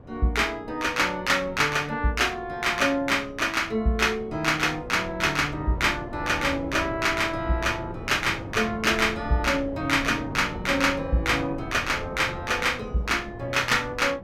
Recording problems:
wind noise; below 440 Hz, SNR 15 dB

